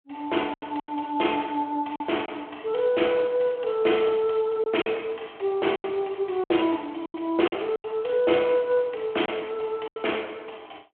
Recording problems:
telephone audio; 260 Hz to 3.3 kHz, Speex
packet loss; 7% of the sound replaced, filled with silence

